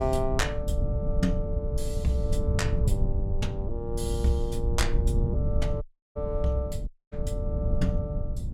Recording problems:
rumble; below 100 Hz, SNR -2 dB
dropout; at 6 s and at 7 s

